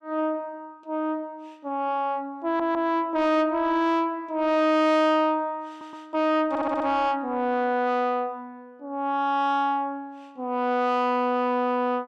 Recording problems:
distortion; soft clipping, signal-to-distortion ratio 10 dB
audio stuttering; at 2.5 s, at 5.5 s and at 6.5 s

